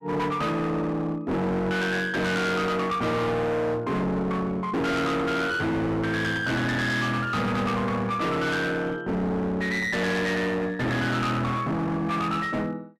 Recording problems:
distortion; hard clipping, uneven, signal-to-distortion ratio 5 dB

